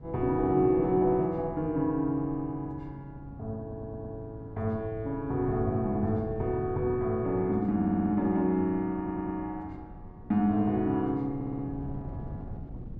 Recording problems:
wind noise; below 200 Hz, SNR 15 dB
stutter; 4 times, first at 3.5 s

